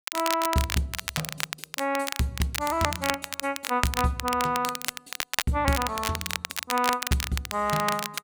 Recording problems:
crackle; vinyl, SNR 4 dB

